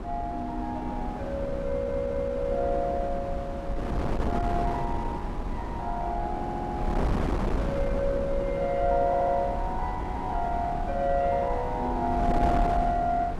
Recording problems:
wind noise; below 370 Hz, SNR 3 dB
audio stuttering; at 1.5 s, at 6.5 s and at 9 s

